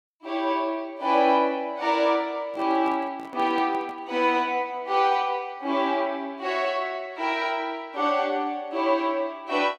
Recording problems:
handling noise; from 2.5 to 4 s; peak -12 dB vs average level

